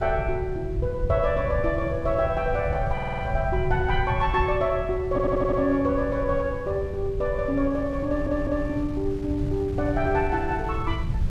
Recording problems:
low-frequency rumble; below 120 Hz, SNR 6 dB
wind on the microphone; below 420 Hz, SNR 19 dB
audio stuttering; at 3 s, at 5 s and at 8 s

